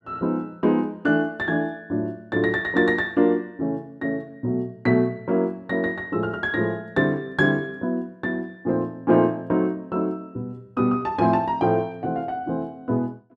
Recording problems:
none

